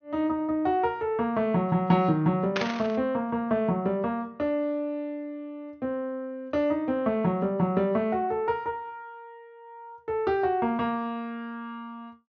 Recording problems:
treble missing; nothing above 6.4 kHz
burst of static; at 2.5 s; peak +3 dB vs average level

